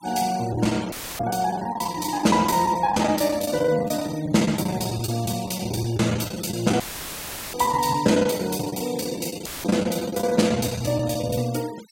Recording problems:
noise reduction artefacts; signal-to-artefact ratio 18 dB
packet loss; 15% of the sound replaced, filled with the last packet
dropout; at 1 s, at 7 s for 0.5 s and at 9.5 s; filled with static

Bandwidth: 16 kHz